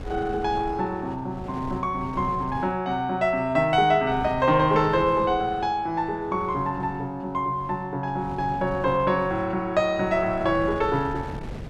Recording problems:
wind on the microphone; below 340 Hz, SNR 16 dB

